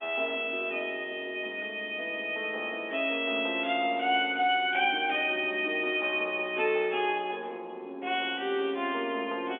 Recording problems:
phone line; 240 Hz to 3.6 kHz, G.711

